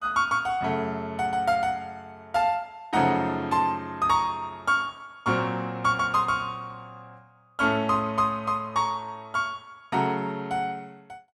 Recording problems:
none

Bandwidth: 14 kHz